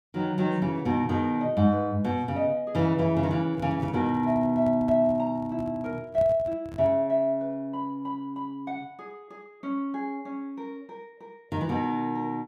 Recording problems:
handling noise; from 3.5 to 7 s; peak -7 dB vs average level

